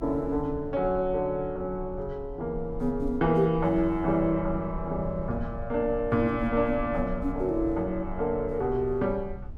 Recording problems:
rumble; below 78 Hz, SNR 13 dB

